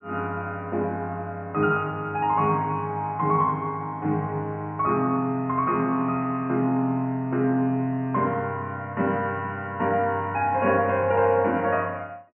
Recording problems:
treble missing; nothing above 3 kHz

